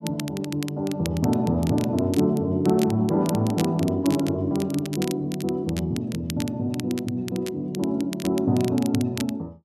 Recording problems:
crackling; vinyl, SNR 15 dB

